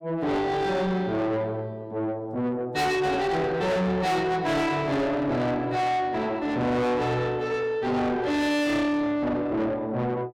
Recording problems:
distortion; soft clipping, signal-to-distortion ratio 7 dB

